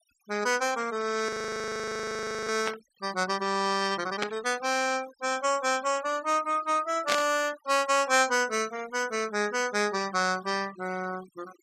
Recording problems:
noise reduction artefacts; signal-to-artefact ratio 18 dB
frozen audio; at 1.5 s for 1 s
static burst; at 2.5 s, at 4 s and at 7 s; peak +4 dB vs average level

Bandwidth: 14.5 kHz